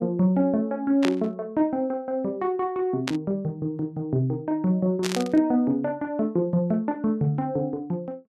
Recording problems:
static burst; at 1 s, at 3 s and at 5 s; peak 0 dB vs average level

